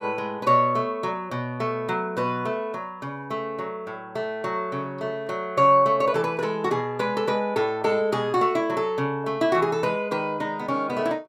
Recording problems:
none

